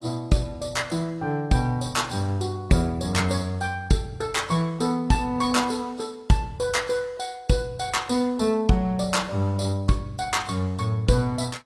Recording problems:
lossy codec; AAC, log-spectral distance 3 dB, nothing above 11 kHz

